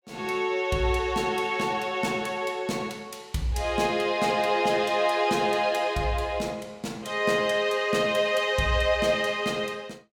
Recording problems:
none

